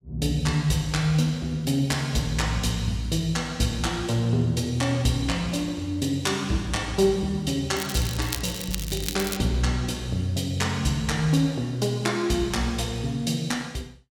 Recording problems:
crackle; from 8 to 9.5 s; loose cable, SNR 8 dB

